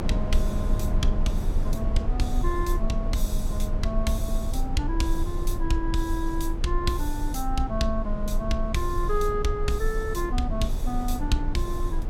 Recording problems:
rumble; below 54 Hz, strongest tone 22 Hz, SNR 0 dB

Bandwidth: 16 kHz